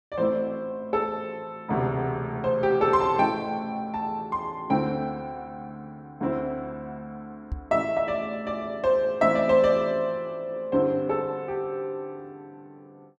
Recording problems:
microphone bump; at 7.5 s; peak -2 dB vs average level

